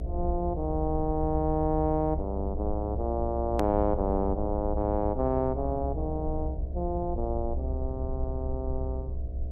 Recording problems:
hum; 60 Hz, harmonics up to 720 Hz, SNR 14 dB
low-frequency rumble; below 68 Hz, strongest tone 66 Hz, SNR 4 dB
hard cut with a click; at 3.5 s

